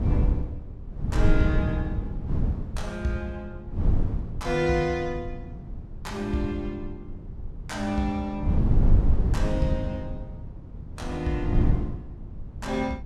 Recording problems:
wind noise; below 110 Hz, SNR -2 dB

